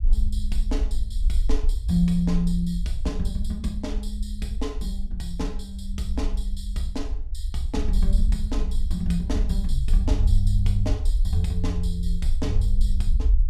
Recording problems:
low-frequency rumble; below 54 Hz, SNR -1 dB

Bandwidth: 14.5 kHz